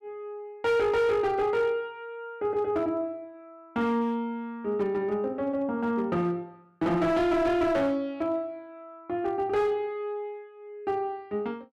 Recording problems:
distorted audio; hard clipping, signal-to-distortion ratio 12 dB

